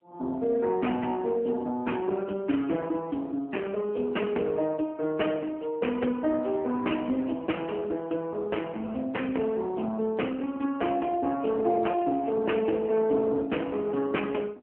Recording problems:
telephone audio; 190 Hz to 3.1 kHz, AMR-NB

